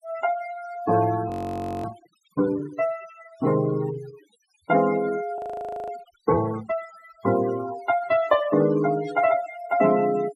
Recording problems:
noise reduction artefacts; signal-to-artefact ratio 15 dB
audio freezing; at 1.5 s for 0.5 s and at 5.5 s for 0.5 s
static burst; at 9 s; peak -23 dB vs average level

